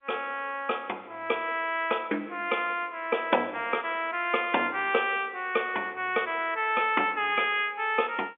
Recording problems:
phone line; 260 Hz to 3.5 kHz, G.711

